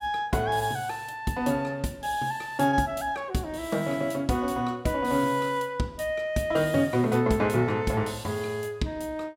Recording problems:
none

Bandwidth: 16 kHz